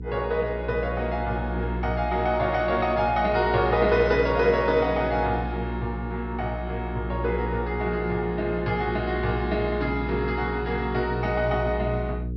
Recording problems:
low-pass filter; nothing above 5.5 kHz
hum; 60 Hz, harmonics up to 480 Hz, SNR 7 dB

